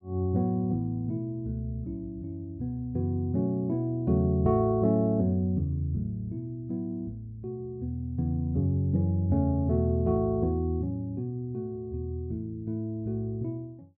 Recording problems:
none

